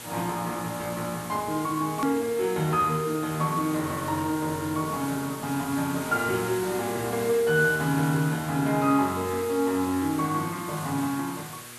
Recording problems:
hum; 60 Hz, harmonics up to 1.6 kHz, SNR 25 dB
hiss; SNR 12 dB
edit click; at 2 s

